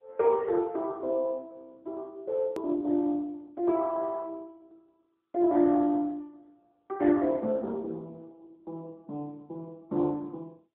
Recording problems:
phone line; 220 Hz to 2 kHz, AMR-NB
edit click; at 2.5 s

